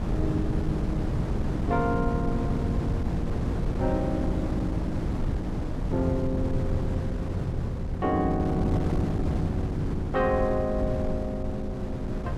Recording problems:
wind noise; below 220 Hz, SNR 0 dB

